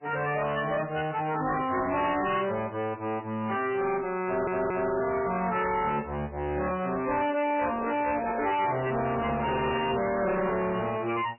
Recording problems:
lossy compression; MP3, log-spectral distance 5 dB, nothing above 2.9 kHz
distorted audio; soft clipping, signal-to-distortion ratio 6 dB
stutter; at 4 s
microphone handling noise; from 7.5 to 11 s; peak -2 dB vs average level

